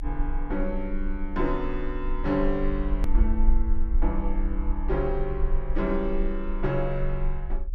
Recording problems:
rumble; below 42 Hz, strongest tone 22 Hz, SNR 1 dB
hard cut with a click; at 3 s

